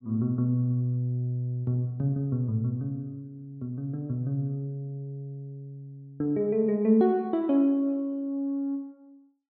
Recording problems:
none

